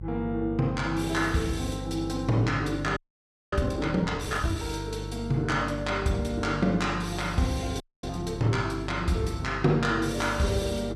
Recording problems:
hum; 50 Hz, harmonics up to 350 Hz, SNR 10 dB
audio freezing; at 3 s for 0.5 s and at 8 s

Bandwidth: 15 kHz